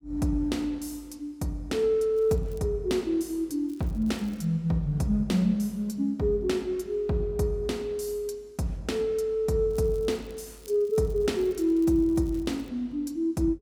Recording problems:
crackle; at 2 s, at 3.5 s and from 9.5 to 13 s; loose cable, SNR 28 dB

